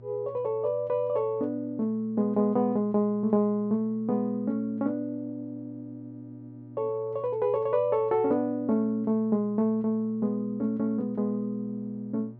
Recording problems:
mains hum; 60 Hz, harmonics up to 720 Hz, SNR 21 dB

